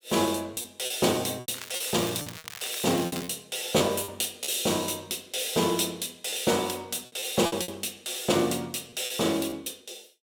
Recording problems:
packet loss; 8% of the sound replaced, filled with repeated pitch periods
crackling; from 1.5 to 3.5 s; loose cable, SNR 12 dB

